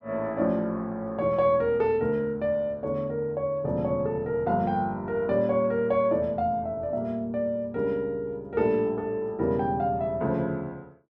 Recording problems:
none

